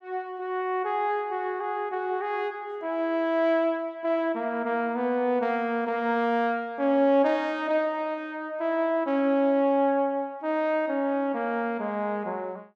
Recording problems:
none

